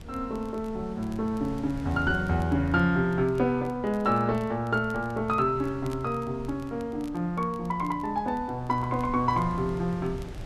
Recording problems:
wind on the microphone; below 190 Hz, SNR 16 dB
crackling; vinyl, SNR 29 dB

